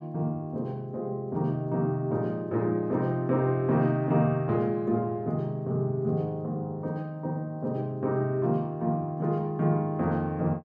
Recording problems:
none

